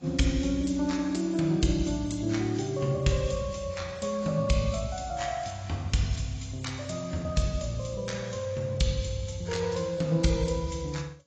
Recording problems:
lossy compression; AAC, log-spectral distance 6 dB, nothing above 7.6 kHz

